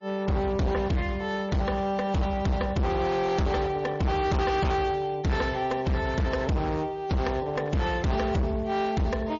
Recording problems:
treble missing; nothing above 7.1 kHz
lossy codec; MP3, then MP3, log-spectral distance 2 dB
distortion; hard clipping, uneven, signal-to-distortion ratio 6 dB

